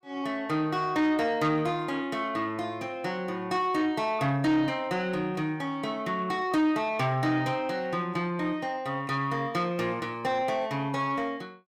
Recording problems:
distortion; soft clipping, signal-to-distortion ratio 12 dB

